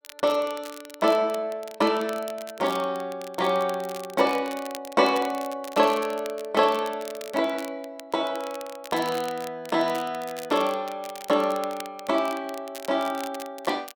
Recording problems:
crackling; vinyl, SNR 17 dB

